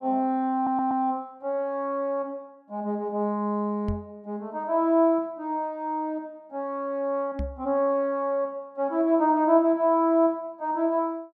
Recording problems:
stutter; at 0.5 s
microphone bump; at 4 s and at 7.5 s; peak -2 dB vs average level

